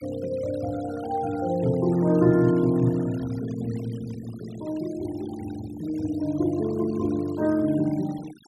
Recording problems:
noise reduction artefacts; signal-to-artefact ratio 22 dB

